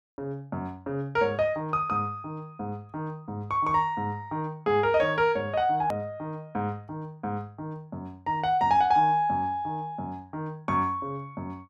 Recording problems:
hard cut with a click; at 6 s

